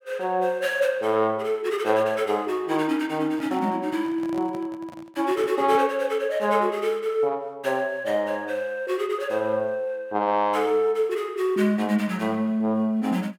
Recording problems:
microphone handling noise; from 3 to 6 s; peak -11 dB vs average level

